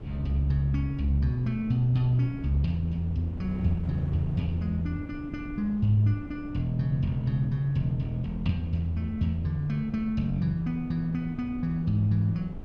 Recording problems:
wind on the microphone; below 210 Hz, SNR 13 dB

